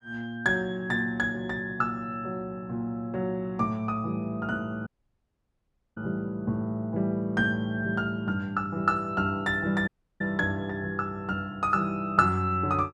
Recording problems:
audio cutting out; at 5 s for 1 s and at 10 s

